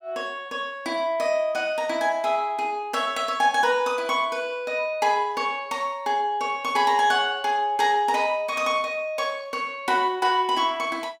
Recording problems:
none

